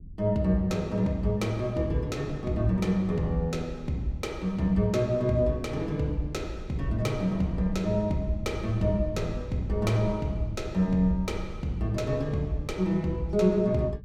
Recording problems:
low-frequency rumble; below 98 Hz, SNR 15 dB

